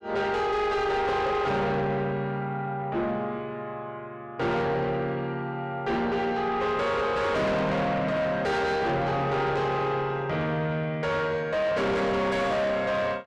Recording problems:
distorted audio; soft clipping, signal-to-distortion ratio 6 dB

